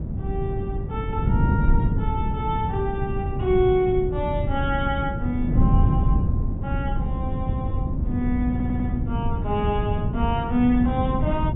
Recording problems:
treble cut off; nothing above 3.8 kHz
wind on the microphone; below 160 Hz, SNR -1 dB
stutter; at 8.5 s

